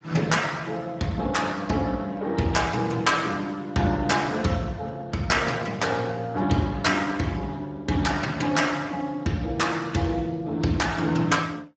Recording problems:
lossy codec; Speex, log-spectral distance 4 dB, nothing above 7.6 kHz

